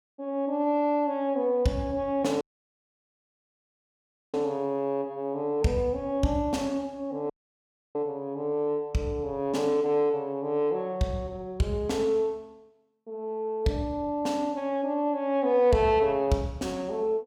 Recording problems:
audio cutting out; at 2.5 s for 2 s and at 7.5 s for 0.5 s

